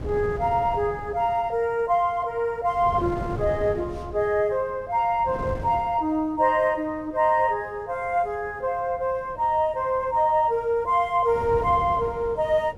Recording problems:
wind noise; below 390 Hz, SNR 15 dB

